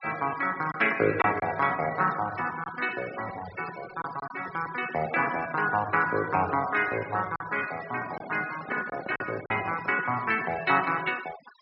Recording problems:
treble missing; nothing above 5.5 kHz
denoising artefacts; signal-to-artefact ratio 16 dB
packet loss; 3% of the sound replaced, filled with silence
handling noise; from 8 to 10 s; peak -7 dB vs average level

